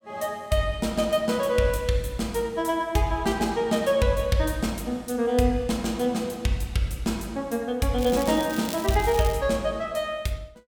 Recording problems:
crackle; from 8 to 9.5 s; loose cable, SNR 12 dB

